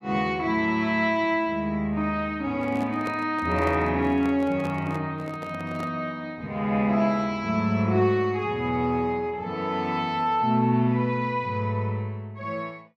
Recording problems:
microphone handling noise; from 2.5 to 6 s; peak -5 dB vs average level

